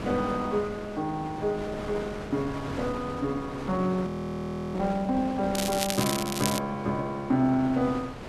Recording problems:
wind noise; below 1.1 kHz, SNR 10 dB
audio freezing; at 4 s for 0.5 s
crackle; from 5.5 to 6.5 s; loose cable, SNR 3 dB

